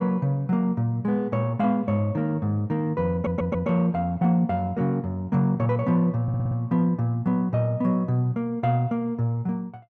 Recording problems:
audio stuttering; at 3 s and at 6 s

